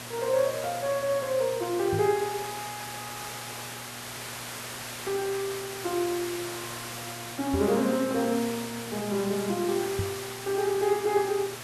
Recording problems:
electrical hum; 60 Hz, harmonics up to 960 Hz, SNR 19 dB
hiss; SNR 8 dB
knock on the microphone; at 2 s, at 7.5 s and at 10 s; peak +1 dB vs average level

